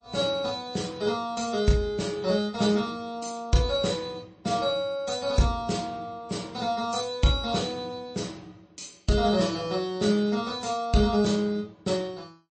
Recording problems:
lossy codec; MP3, log-spectral distance 4 dB, nothing above 8.2 kHz

